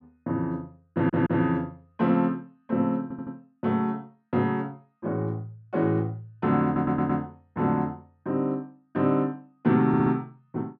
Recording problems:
audio stuttering; 4 times, first at 1 s

